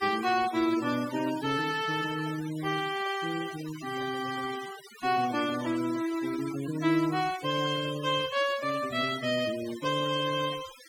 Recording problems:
noise reduction artefacts; signal-to-artefact ratio 14 dB

